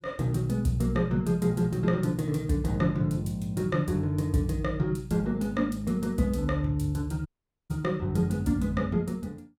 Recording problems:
audio cutting out; at 7.5 s

